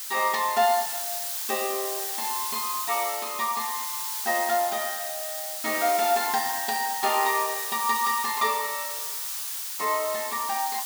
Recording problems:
background hiss; SNR 3 dB

